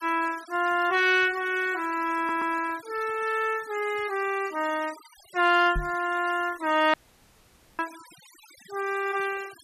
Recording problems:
noise reduction artefacts; signal-to-artefact ratio 19 dB
stutter; at 2 s
knock on the microphone; at 6 s; peak -2 dB vs average level
audio cutting out; at 7 s for 1 s

